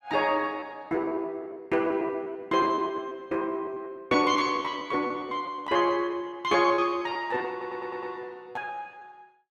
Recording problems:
packet loss; 14% of the sound replaced, filled with repeated pitch periods
stutter; at 7.5 s

